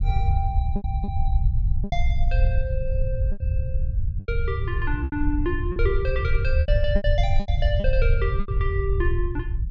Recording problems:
rumble; below 80 Hz, SNR -5 dB
lost packets; 8% of the sound replaced, filled with repeated pitch periods

